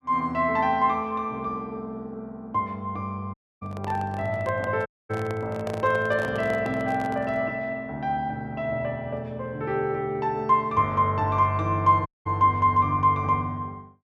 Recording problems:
audio cutting out; at 3.5 s, at 5 s and at 12 s
handling noise; from 3.5 to 7.5 s; peak -6 dB vs average level

